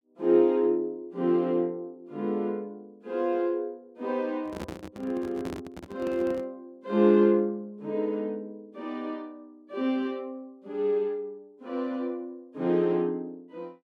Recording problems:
microphone handling noise; from 4.5 to 6.5 s; peak -5 dB vs average level

